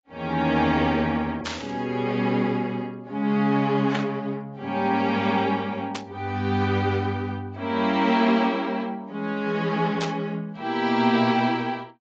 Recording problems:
codec artefacts; AAC, log-spectral distance 2 dB, nothing above 6.2 kHz
static burst; 4 times, first at 1.5 s; peak -2 dB vs average level

